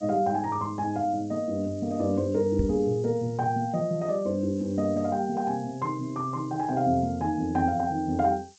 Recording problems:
lossy codec; G.722, log-spectral distance 6 dB
background hiss; SNR 27 dB
microphone thump; at 2.5 s; peak +4 dB vs average level

